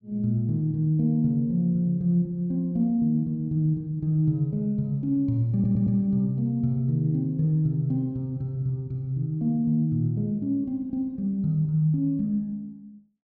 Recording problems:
audio stuttering; at 5.5 s

